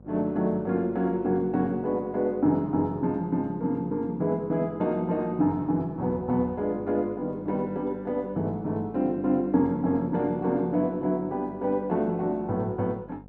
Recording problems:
electrical hum; 50 Hz, harmonics up to 850 Hz, SNR 23 dB

